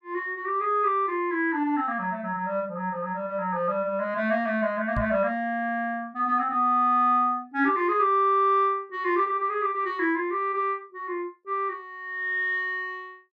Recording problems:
microphone thump; at 5 s; peak -1 dB vs average level

